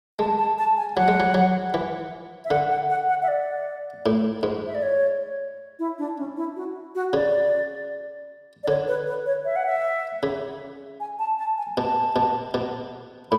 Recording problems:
none

